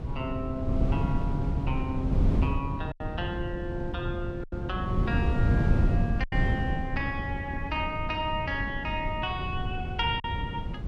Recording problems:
wind noise; below 160 Hz, SNR -2 dB
lost packets; 3% of the sound replaced, filled with silence

